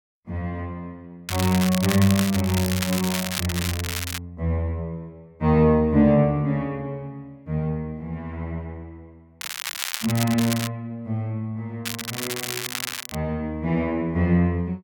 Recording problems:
crackling; from 1.5 to 4 s, from 9.5 to 11 s and from 12 to 13 s; loose cable, SNR 5 dB

